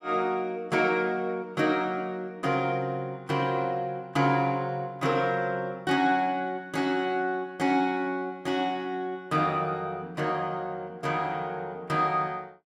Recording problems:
none

